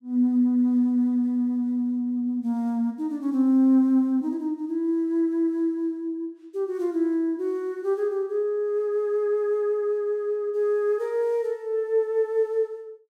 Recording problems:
none

